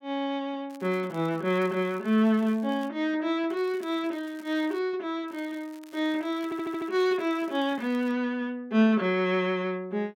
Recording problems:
crackle; from 0.5 to 3 s, from 3.5 to 5 s and from 5.5 to 8 s; loose cable, SNR 27 dB
audio stuttering; at 6.5 s

